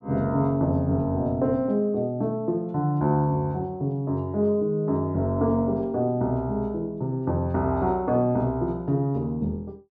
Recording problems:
none

